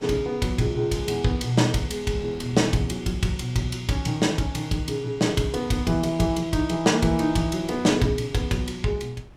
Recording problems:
wind on the microphone; below 470 Hz, SNR 23 dB

